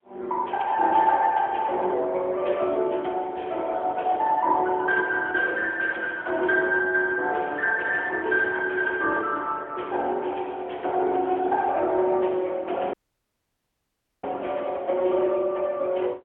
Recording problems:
phone line; 300 Hz to 3.3 kHz, AMR-NB, then MP3
audio cutting out; at 13 s for 1.5 s

